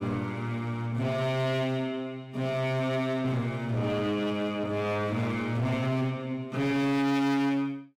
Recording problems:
distortion; hard clipping, uneven, signal-to-distortion ratio 6 dB

